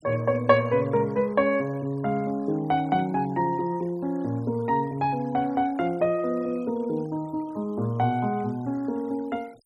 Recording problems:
denoising artefacts; signal-to-artefact ratio 27 dB

